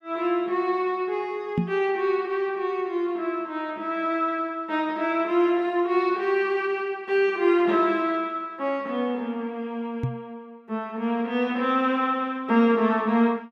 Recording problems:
microphone thump; at 1.5 s and at 10 s; peak +4 dB vs average level

